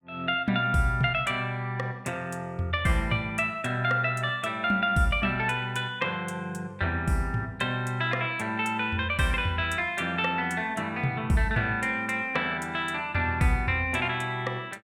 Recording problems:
none

